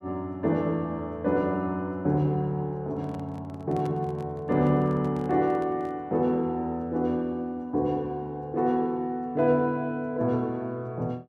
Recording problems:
microphone handling noise; from 3 to 6 s; peak -9 dB vs average level

